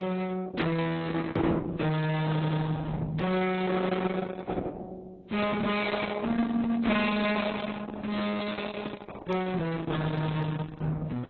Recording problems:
lossy compression; Opus, then AAC, log-spectral distance 4 dB, nothing above 4 kHz
distorted audio; soft clipping, signal-to-distortion ratio 6 dB
audio stuttering; at 2.5 s
microphone handling noise; from 5.5 to 9.5 s; peak -3 dB vs average level

